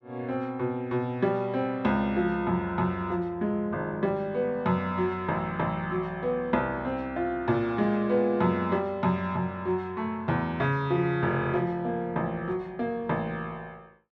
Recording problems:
none

